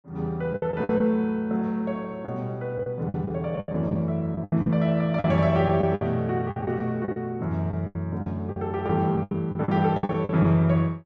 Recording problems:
packet loss; 13% of the sound replaced, filled with the last packet

